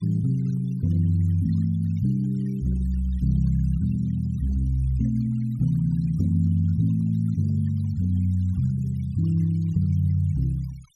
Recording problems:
denoising artefacts; signal-to-artefact ratio 28 dB

